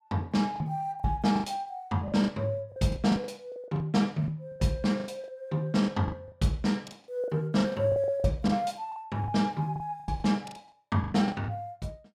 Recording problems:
lost packets; 15% of the sound replaced, filled with the last packet

